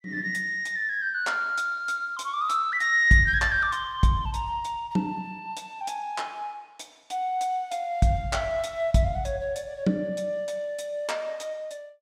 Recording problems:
none

